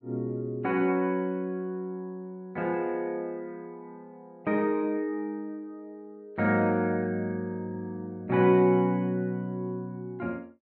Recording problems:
none

